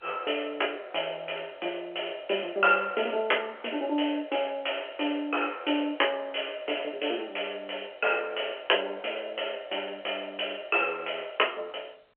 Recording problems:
telephone audio; 370 Hz to 3.3 kHz, G.711

